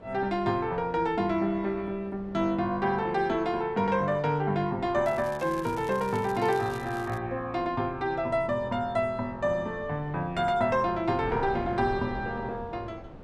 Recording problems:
wind on the microphone; below 500 Hz, SNR 17 dB
crackle; from 5 to 7 s; loose cable, SNR 21 dB

